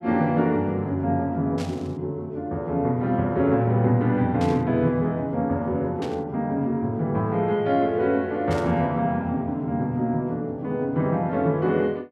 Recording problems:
burst of static; 4 times, first at 1.5 s; peak -10 dB vs average level

